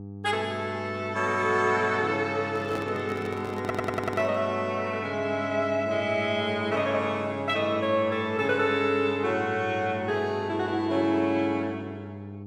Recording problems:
electrical hum; 50 Hz, harmonics up to 800 Hz, SNR 13 dB
microphone handling noise; from 2.5 to 4.5 s; peak -5 dB vs average level
stutter; at 3.5 s

